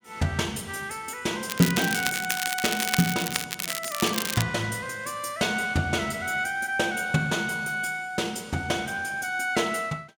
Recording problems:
crackle; from 1.5 to 4.5 s; loose cable, SNR 2 dB

